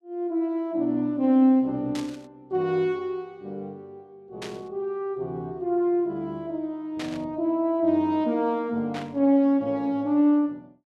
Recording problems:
static burst; 4 times, first at 2 s; peak -8 dB vs average level

